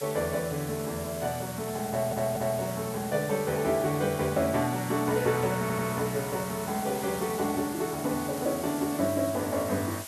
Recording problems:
hiss; slope 0 dB per octave, SNR 11 dB
stutter; at 2 s and at 5.5 s

